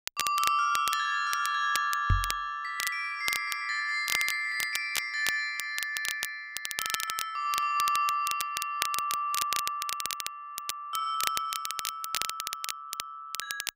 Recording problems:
crackle; vinyl, SNR 5 dB
microphone thump; at 2 s; peak +7 dB vs average level

